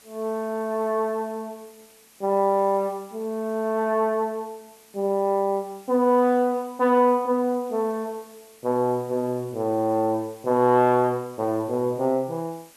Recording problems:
background hiss; slope -1 dB per octave, SNR 27 dB

